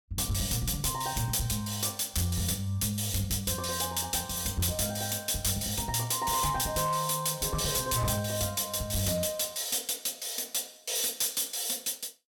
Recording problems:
distorted audio; hard clipping, signal-to-distortion ratio 11 dB

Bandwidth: 18 kHz